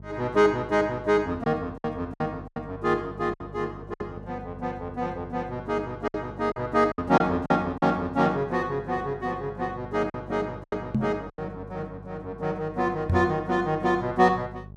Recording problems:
electrical hum; 50 Hz, harmonics up to 650 Hz, SNR 17 dB
packet loss; 5% of the sound replaced, filled with silence
microphone thump; at 11 s and at 13 s; peak +5 dB vs average level

